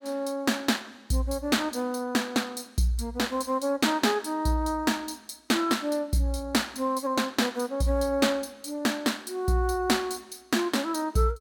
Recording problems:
none

